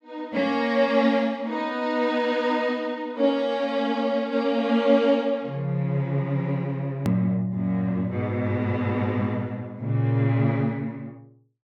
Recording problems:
hard cut with a click; at 7 s

